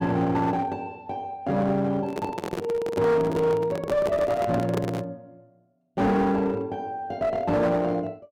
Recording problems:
distortion; hard clipping, uneven, signal-to-distortion ratio 10 dB
handling noise; from 2 to 5 s; peak +1 dB vs average level

